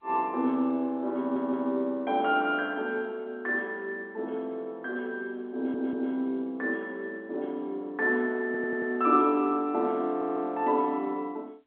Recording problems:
telephone audio; 220 Hz to 3.6 kHz, G.711
audio stuttering; 4 times, first at 1 s

